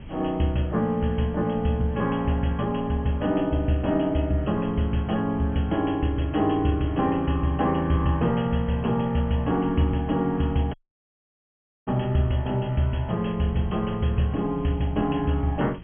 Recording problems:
treble cut off; nothing above 3.3 kHz
codec artefacts; G.722, log-spectral distance 4 dB
background hiss; SNR 29 dB
wind noise; below 170 Hz, SNR 18 dB
dropout; at 11 s for 1 s

